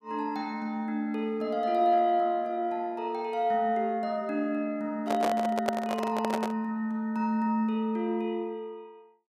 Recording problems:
handling noise; from 5 to 6.5 s; peak +4 dB vs average level

